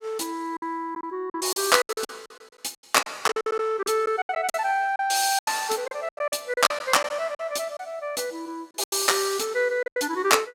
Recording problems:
lost packets; 13% of the sound replaced, filled with silence

